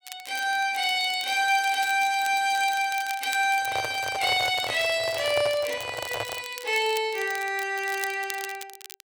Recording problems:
crackle; vinyl, SNR 15 dB
handling noise; from 3.5 to 6.5 s; peak -3 dB vs average level

